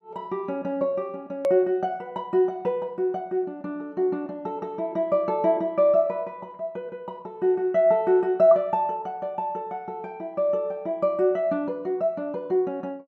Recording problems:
hard cut with a click; at 1.5 s

